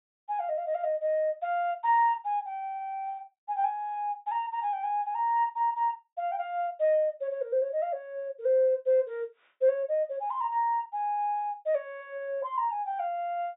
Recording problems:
treble missing; nothing above 4 kHz

